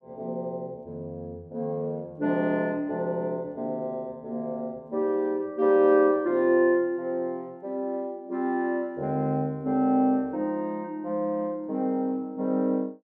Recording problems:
none

